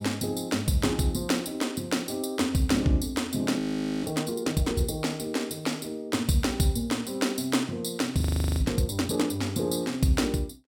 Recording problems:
audio freezing; at 3.5 s and at 8 s

